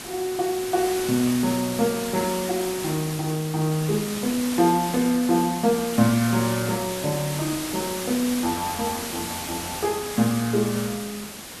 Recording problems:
background hiss; slope -2 dB per octave, SNR 7 dB

